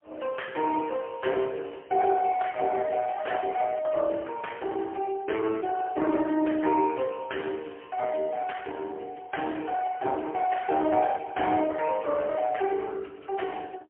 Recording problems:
phone line; 260 Hz to 3.1 kHz, AMR-NB, then MP3

